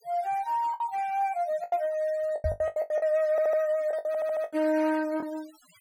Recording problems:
noise reduction artefacts; signal-to-artefact ratio 22 dB
lost packets; 14% of the sound replaced, filled with the last packet
microphone bump; at 2.5 s; peak 0 dB vs average level
audio stuttering; at 3.5 s and at 4 s

